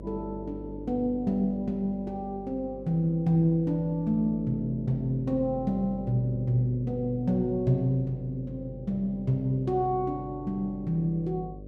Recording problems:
hum; 50 Hz, harmonics up to 600 Hz, SNR 15 dB

